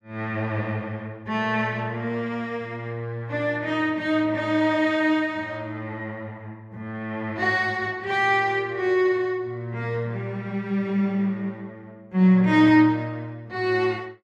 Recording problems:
none

